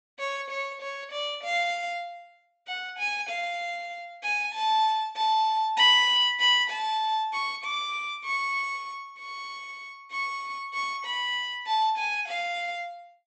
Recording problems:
treble cut off; nothing above 8 kHz

